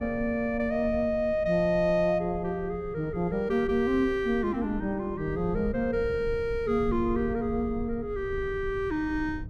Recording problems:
rumble; below 120 Hz, SNR 14 dB

